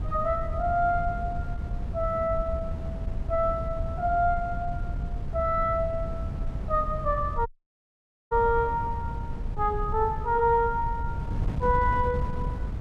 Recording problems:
wind on the microphone; below 110 Hz, SNR 6 dB
audio cutting out; at 7.5 s for 1 s

